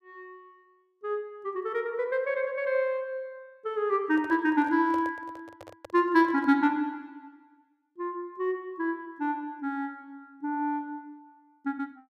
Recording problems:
microphone handling noise; from 4 to 6.5 s; peak -10 dB vs average level

